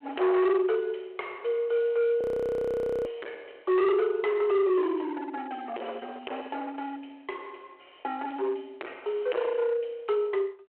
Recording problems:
phone line; 320 Hz to 3.2 kHz, G.726
distortion; hard clipping, signal-to-distortion ratio 8 dB
audio freezing; at 2 s for 1 s

